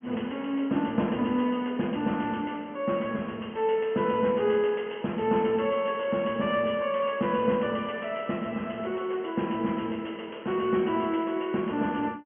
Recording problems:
low-pass filter; nothing above 3.1 kHz

